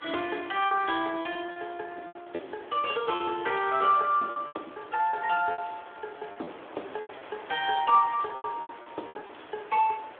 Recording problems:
phone line; 260 Hz to 3.5 kHz, Speex
wind on the microphone; below 1.8 kHz, SNR 20 dB
packet loss; 12% of the sound replaced, filled with repeated pitch periods

